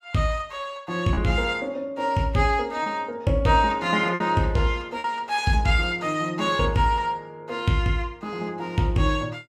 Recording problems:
packet loss; 2% of the sound replaced, filled with repeated pitch periods

